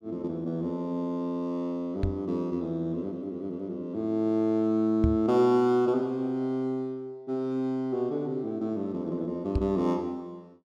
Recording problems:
knock on the microphone; at 2 s, at 5 s and at 9.5 s; peak +6 dB vs average level

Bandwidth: 12.5 kHz